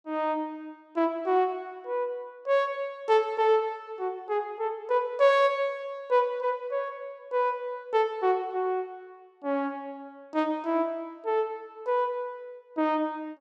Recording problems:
none

